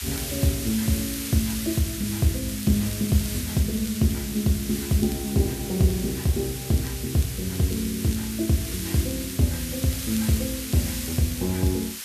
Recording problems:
background hiss; slope +3 dB per octave, SNR 7 dB
crackling; vinyl, SNR 24 dB

